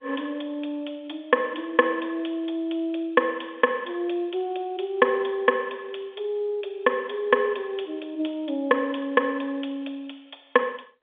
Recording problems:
telephone audio; 190 Hz to 3.6 kHz, G.711

